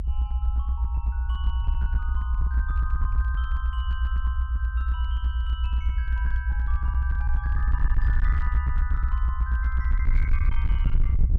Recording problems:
distorted audio; hard clipping, uneven, signal-to-distortion ratio 10 dB
low-frequency rumble; below 64 Hz, SNR -13 dB

